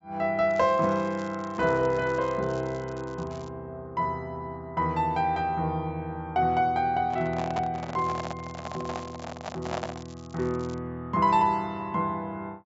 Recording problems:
treble cut off; nothing above 8 kHz
crackling; until 3.5 s and from 8 to 11 s; loose cable, SNR 25 dB
handling noise; from 7 to 10 s; peak -1 dB vs average level

